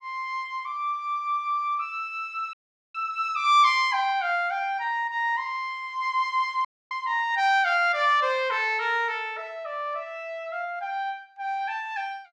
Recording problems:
audio cutting out; at 2.5 s and at 6.5 s

